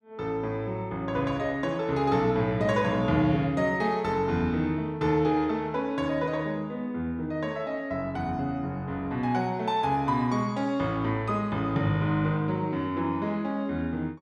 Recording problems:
none

